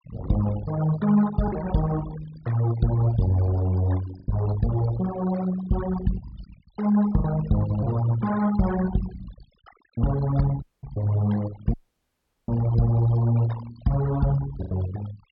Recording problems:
treble cut off; nothing above 5.5 kHz
denoising artefacts; signal-to-artefact ratio 15 dB
lost packets; 2% of the sound replaced, filled with the last packet
dropout; at 11 s and at 12 s for 0.5 s

